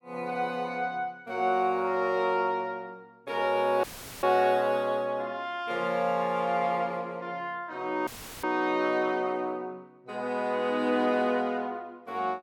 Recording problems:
dropout; at 4 s and at 8 s; filled with static

